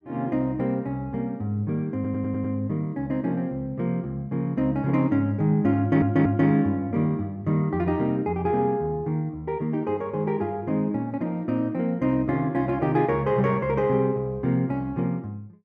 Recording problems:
audio stuttering; at 2 s and at 6 s

